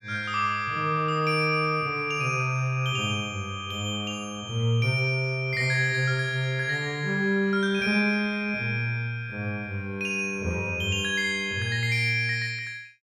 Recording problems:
none

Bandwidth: 17.5 kHz